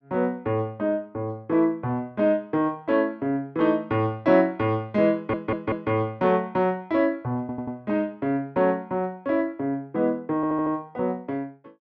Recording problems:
audio stuttering; at 5 s, at 7.5 s and at 10 s

